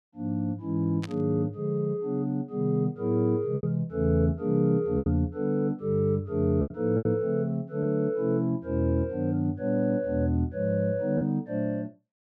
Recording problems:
packet loss; 3% of the sound replaced, filled with repeated pitch periods
burst of static; at 1 s; peak -8 dB vs average level

